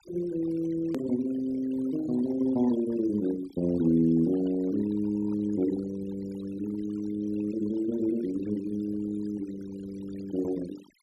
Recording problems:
noise reduction artefacts; signal-to-artefact ratio 18 dB
hard cut with a click; at 1 s

